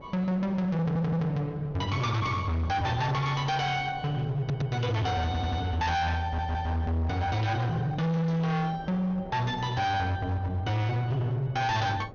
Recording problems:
low-pass filter; nothing above 6.6 kHz
distorted audio; hard clipping, signal-to-distortion ratio 8 dB
wind noise; below 650 Hz, SNR 19 dB
audio stuttering; 4 times, first at 1 s

